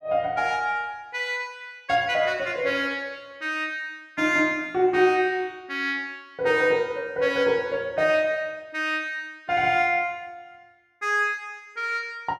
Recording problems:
none

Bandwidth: 14.5 kHz